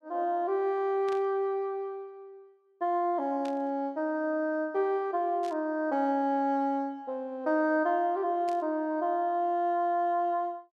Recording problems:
burst of static; 4 times, first at 1 s; peak -14 dB vs average level

